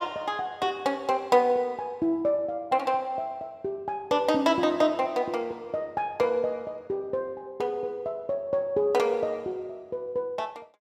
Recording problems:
none

